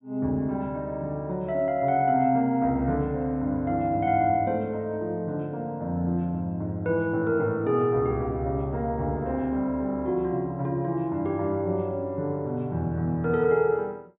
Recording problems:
treble missing; nothing above 4 kHz

